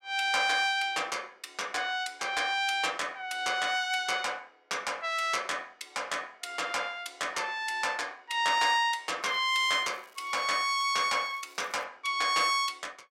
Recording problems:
crackling; from 9 to 12 s; loose cable, SNR 29 dB

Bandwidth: 16 kHz